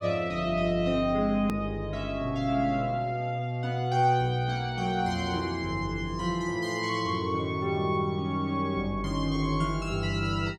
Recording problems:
hard cut with a click; at 1.5 s

